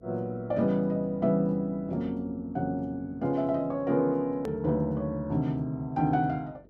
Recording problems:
hum; 50 Hz, harmonics up to 500 Hz, SNR 26 dB
click at an edit; at 4.5 s

